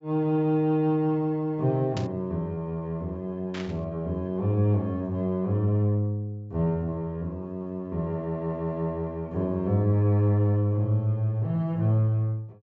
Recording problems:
low-pass filter; nothing above 8 kHz
burst of static; at 2 s and at 3.5 s; peak -7 dB vs average level

